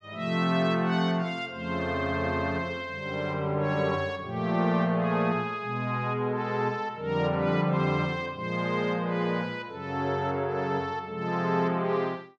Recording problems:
none

